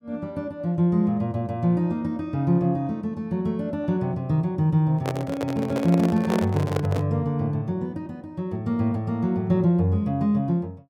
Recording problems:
handling noise; from 5 to 7 s; peak +1 dB vs average level

